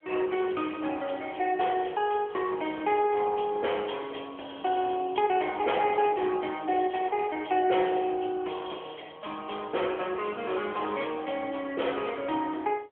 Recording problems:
phone line; 300 Hz to 3.4 kHz, AMR-NB

